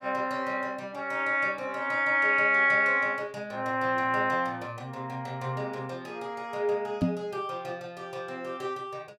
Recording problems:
microphone bump; at 7 s; peak +6 dB vs average level

